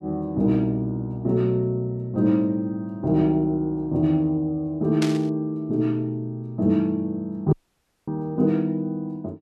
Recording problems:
burst of static; at 5 s; peak -2 dB vs average level
dropout; at 7.5 s for 0.5 s

